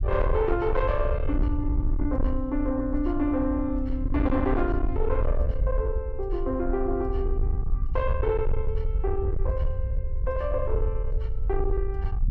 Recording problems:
distortion; soft clipping, signal-to-distortion ratio 10 dB
low-frequency rumble; below 70 Hz, SNR 1 dB

